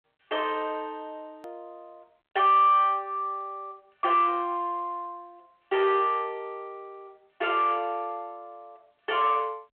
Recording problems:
phone line; 320 Hz to 3.5 kHz, G.726
distorted audio; soft clipping, signal-to-distortion ratio 5 dB
hard cut with a click; at 1.5 s

